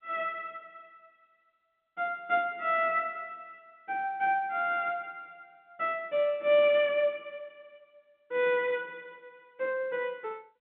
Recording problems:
phone line; 190 Hz to 3.4 kHz, G.711

